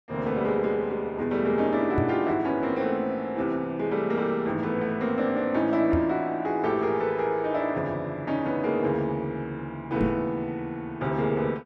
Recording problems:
microphone thump; at 2 s, at 6 s and at 10 s; peak +3 dB vs average level

